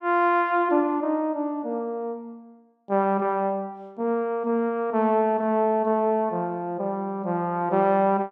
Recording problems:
none

